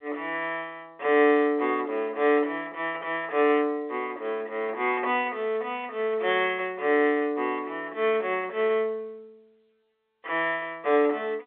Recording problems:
telephone audio; 320 Hz to 3.5 kHz, G.711

